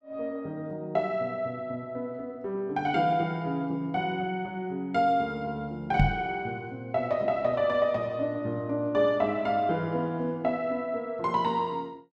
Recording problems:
knock on the microphone; at 6 s; peak +8 dB vs average level

